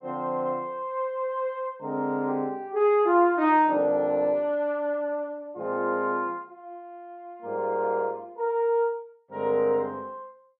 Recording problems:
none

